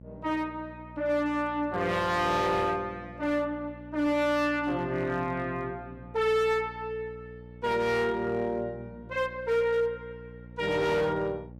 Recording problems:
distortion; hard clipping, signal-to-distortion ratio 11 dB
hum; 60 Hz, harmonics up to 600 Hz, SNR 18 dB

